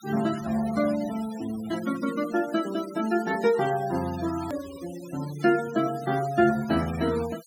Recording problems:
denoising artefacts; signal-to-artefact ratio 16 dB
hard cut with a click; at 4.5 s

